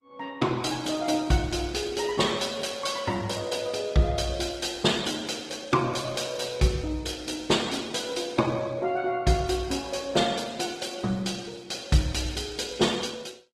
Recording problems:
lossy compression; Opus, log-spectral distance 5 dB

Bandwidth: 15 kHz